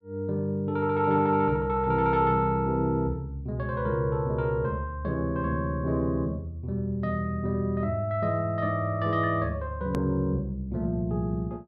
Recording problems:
hard cut with a click; at 10 s

